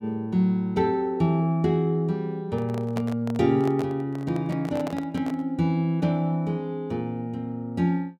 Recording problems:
handling noise; from 2.5 to 5.5 s; peak -4 dB vs average level

